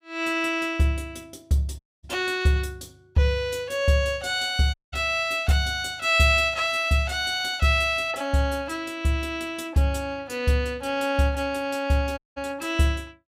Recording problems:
dropout; at 2 s, at 4.5 s and at 12 s

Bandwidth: 15.5 kHz